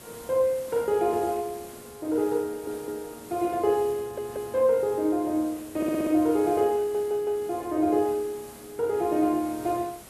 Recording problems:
background hiss; slope -4 dB per octave, SNR 19 dB
stutter; 4 times, first at 2.5 s

